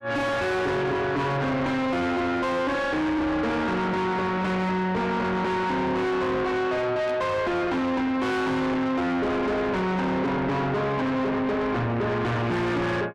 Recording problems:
distortion; soft clipping, signal-to-distortion ratio 6 dB
static burst; at 7 s; peak -15 dB vs average level

